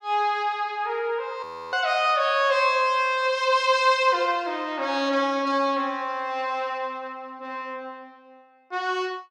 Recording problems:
audio freezing; at 1.5 s

